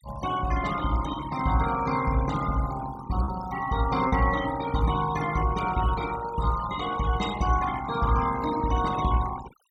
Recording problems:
noise reduction artefacts; signal-to-artefact ratio 12 dB
packet loss; 0.8% of the sound replaced, filled with repeated pitch periods

